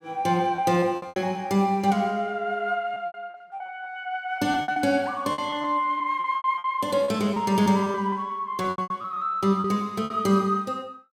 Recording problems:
lost packets; 12% of the sound replaced, filled with repeated pitch periods

